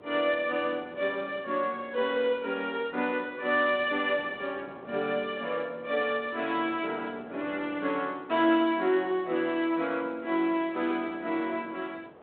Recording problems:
phone line; 260 Hz to 3.5 kHz, G.726
wind on the microphone; below 810 Hz, SNR 20 dB

